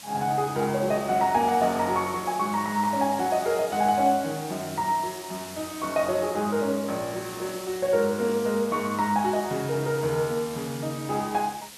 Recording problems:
background hiss; slope +1 dB per octave, SNR 14 dB

